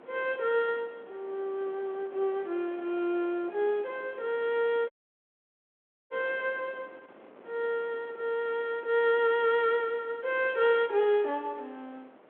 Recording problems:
telephone audio; 300 Hz to 3.7 kHz, G.726
wind noise; below 950 Hz, SNR 24 dB
dropout; at 5 s for 1 s

